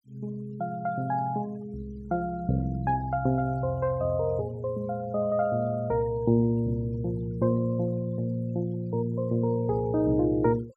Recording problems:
noise reduction artefacts; signal-to-artefact ratio 28 dB

